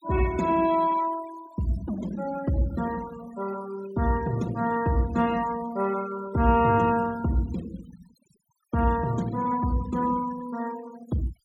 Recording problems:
denoising artefacts; signal-to-artefact ratio 18 dB

